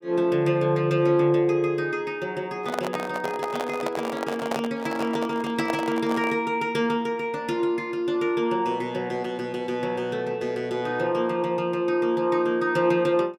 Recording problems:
microphone handling noise; from 2.5 to 6.5 s; peak 0 dB vs average level

